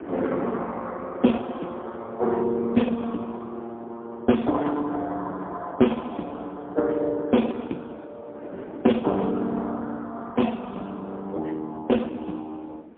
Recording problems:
telephone audio; 220 Hz to 3.5 kHz, AMR-NB, then MP3
wind noise; below 500 Hz, SNR 15 dB

